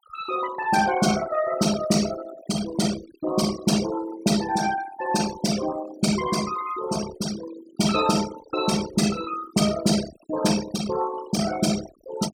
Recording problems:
noise reduction artefacts; signal-to-artefact ratio 12 dB

